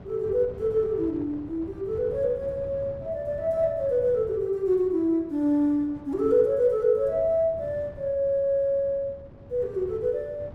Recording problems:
wind noise; below 330 Hz, SNR 19 dB

